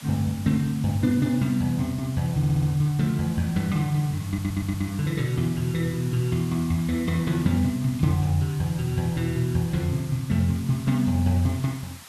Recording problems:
hiss; SNR 18 dB
stutter; at 2.5 s and at 4.5 s

